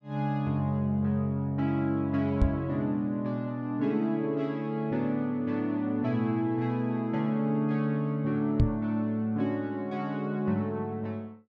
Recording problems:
microphone bump; at 2.5 s and at 8.5 s; peak +8 dB vs average level

